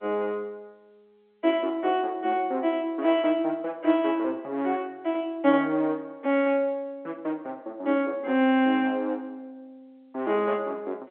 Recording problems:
telephone audio; 220 Hz to 3.6 kHz, G.711

